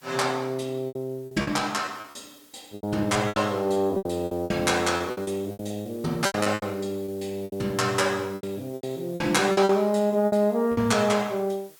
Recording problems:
background hiss; slope +1 dB per octave, SNR 26 dB
lost packets; 14% of the sound replaced, filled with repeated pitch periods

